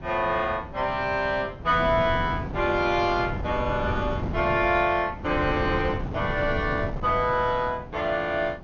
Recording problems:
treble missing; nothing above 6.6 kHz
wind on the microphone; below 290 Hz, SNR 9 dB

